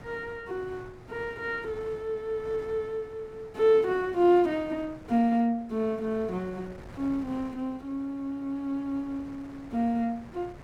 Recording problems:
wind noise; below 760 Hz, SNR 20 dB

